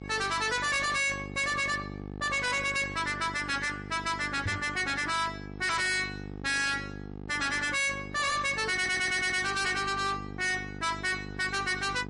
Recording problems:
lossy codec; MP3, log-spectral distance 4 dB, nothing above 10.4 kHz
distortion; hard clipping, signal-to-distortion ratio 6 dB
hum; 50 Hz, harmonics up to 1.3 kHz, SNR 13 dB
microphone bump; at 4.5 s; peak -1 dB vs average level
audio stuttering; at 9 s

